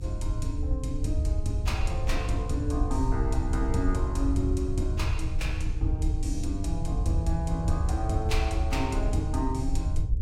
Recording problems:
electrical hum; 60 Hz, harmonics up to 540 Hz, SNR 18 dB
rumble; below 82 Hz, SNR -1 dB

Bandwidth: 16.5 kHz